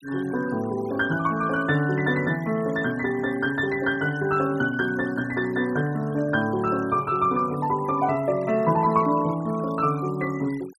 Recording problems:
noise reduction artefacts; signal-to-artefact ratio 22 dB

